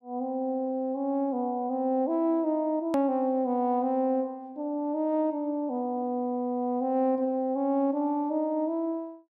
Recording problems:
click at an edit; at 3 s

